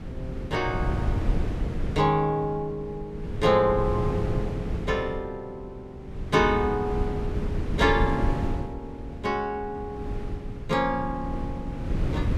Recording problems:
wind noise; below 170 Hz, SNR 5 dB

